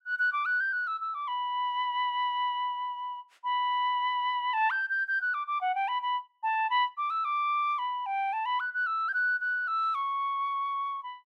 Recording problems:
none

